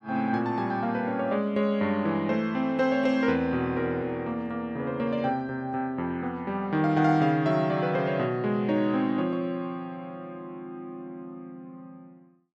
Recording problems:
none

